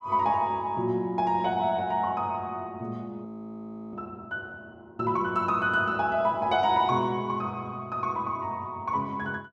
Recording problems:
frozen audio; at 3.5 s for 0.5 s

